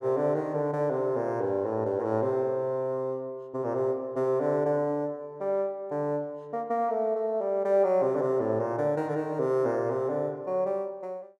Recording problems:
none

